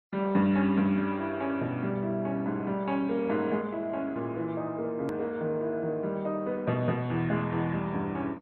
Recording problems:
codec artefacts; MP2, then MP2, log-spectral distance 2 dB, nothing above 13.1 kHz
click at an edit; at 5 s

